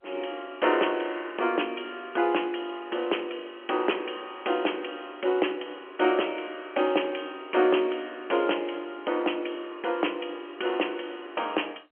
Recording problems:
telephone audio; 260 Hz to 3.3 kHz, G.711

